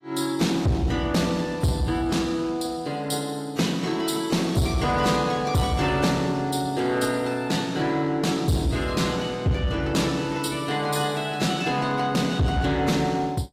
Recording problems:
lossy compression; AAC, log-spectral distance 3 dB, nothing above 15.1 kHz
distortion; soft clipping, signal-to-distortion ratio 11 dB

